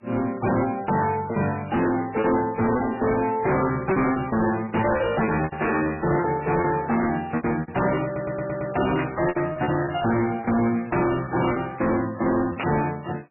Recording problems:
lossy codec; MP3, log-spectral distance 5 dB, nothing above 2.8 kHz
distortion; hard clipping, uneven, signal-to-distortion ratio 6 dB
packet loss; 10% of the sound replaced, filled with repeated pitch periods
audio stuttering; at 8 s
static burst; at 9 s and at 13 s; peak -2 dB vs average level

